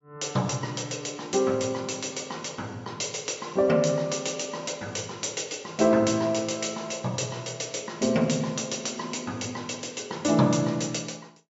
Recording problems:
treble missing; nothing above 8 kHz

